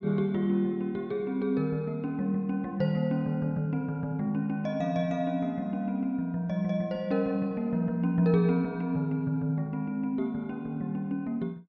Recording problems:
none

